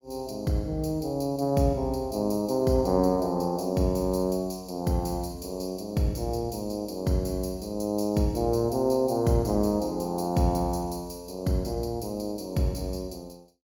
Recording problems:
none

